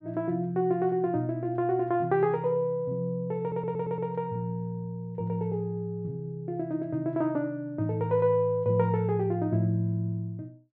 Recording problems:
audio stuttering; at 3.5 s

